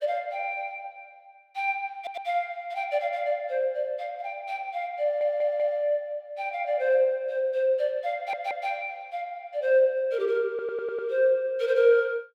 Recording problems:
audio stuttering; 4 times, first at 2 s

